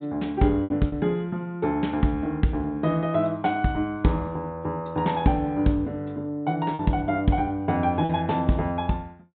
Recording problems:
treble cut off; nothing above 4 kHz
lost packets; 2% of the sound replaced, filled with repeated pitch periods

